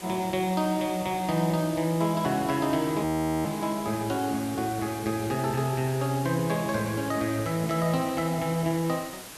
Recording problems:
hiss; slope -2 dB per octave, SNR 13 dB
audio freezing; at 3 s

